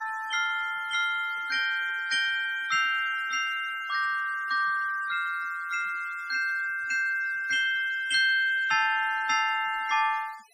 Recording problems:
noise reduction artefacts; signal-to-artefact ratio 25 dB

